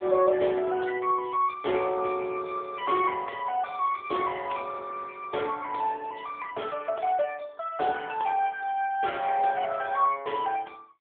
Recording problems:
telephone audio; 300 Hz to 3.5 kHz, AMR-NB

